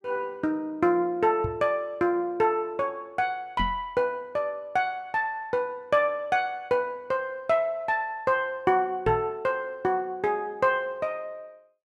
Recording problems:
knock on the microphone; at 1.5 s, at 3.5 s and at 9 s; peak -1 dB vs average level

